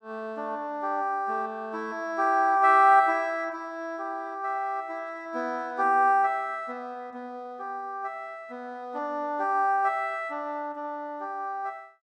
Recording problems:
none

